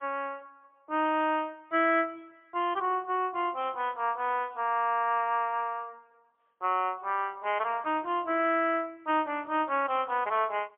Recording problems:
telephone audio; 260 Hz to 3.3 kHz, AMR-NB, then MP3

